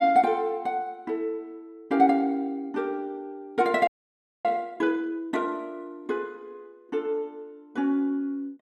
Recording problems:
audio freezing; at 4 s for 0.5 s

